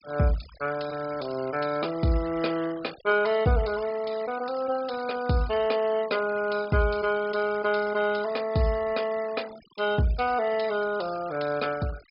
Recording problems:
treble missing; nothing above 5.5 kHz
noise reduction artefacts; signal-to-artefact ratio 18 dB

